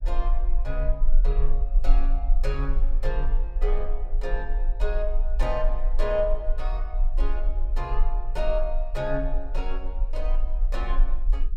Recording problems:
rumble; below 36 Hz, strongest tone 20 Hz, SNR -5 dB

